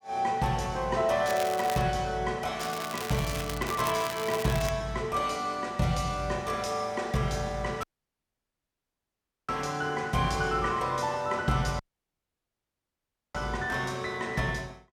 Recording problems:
crackling; at 1.5 s and from 2.5 to 4.5 s; loose cable, SNR 9 dB
audio cutting out; at 8 s for 1.5 s and at 12 s for 1.5 s

